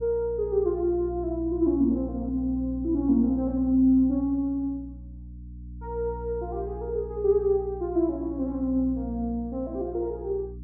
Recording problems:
mains hum; 60 Hz, harmonics up to 300 Hz, SNR 13 dB

